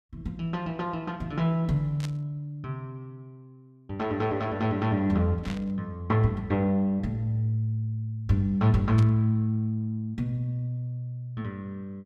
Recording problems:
burst of static; at 2 s, at 5.5 s and at 9 s; peak -8 dB vs average level

